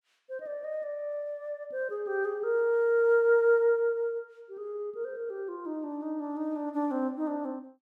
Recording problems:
none

